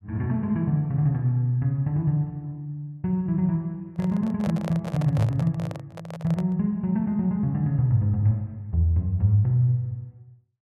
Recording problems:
handling noise; from 4 to 6.5 s; peak -5 dB vs average level

